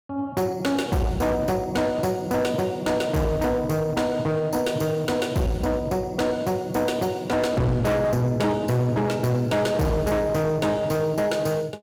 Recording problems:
distortion; hard clipping, uneven, signal-to-distortion ratio 7 dB

